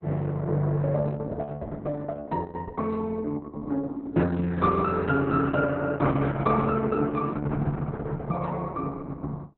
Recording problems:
codec artefacts; Opus, log-spectral distance 3 dB, nothing above 4 kHz

